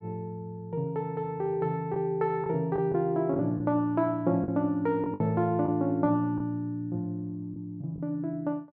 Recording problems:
lost packets; 4% of the sound replaced, filled with the last packet

